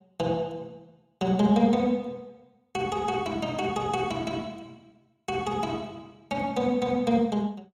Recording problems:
none

